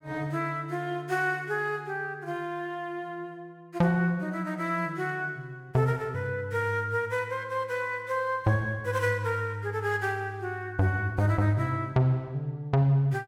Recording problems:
none

